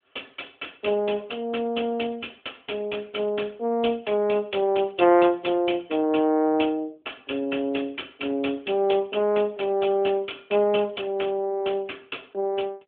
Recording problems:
phone line; 220 Hz to 3.4 kHz, AMR-NB

